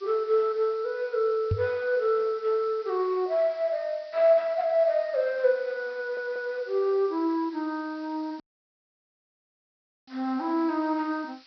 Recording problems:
treble missing; nothing above 5.5 kHz
hiss; slope +4 dB per octave, SNR 27 dB
microphone thump; at 1.5 s; peak +3 dB vs average level
stutter; at 6 s
audio cutting out; at 8.5 s for 1.5 s

